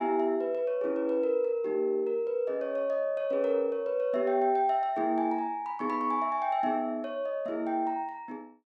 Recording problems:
none

